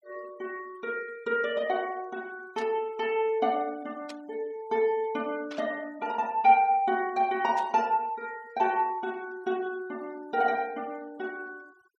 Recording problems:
noise reduction artefacts; signal-to-artefact ratio 25 dB
burst of static; 4 times, first at 2.5 s; peak -10 dB vs average level

